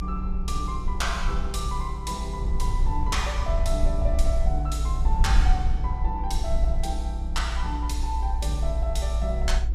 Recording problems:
rumble; below 58 Hz, SNR -4 dB

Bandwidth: 14.5 kHz